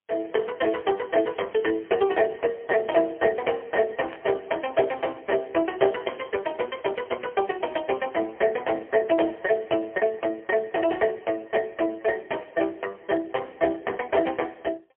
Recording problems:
telephone audio; 280 Hz to 2.9 kHz, AMR-NB, then MP3
burst of static; at 4 s, at 6 s and at 11 s; peak -14 dB vs average level

